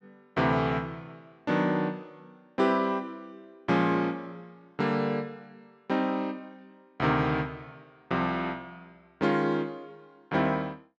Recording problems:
none

